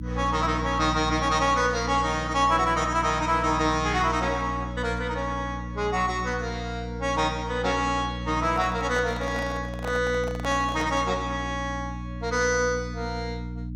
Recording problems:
hum; 60 Hz, harmonics up to 300 Hz, SNR 9 dB
microphone handling noise; from 8.5 to 11 s; peak -6 dB vs average level

